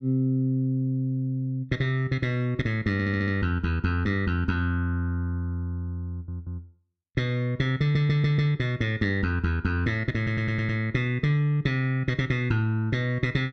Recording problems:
audio stuttering; 4 times, first at 3 s

